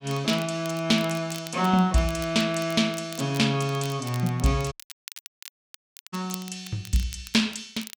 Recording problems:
crackle; vinyl, SNR 17 dB
dropout; at 4.5 s for 1.5 s

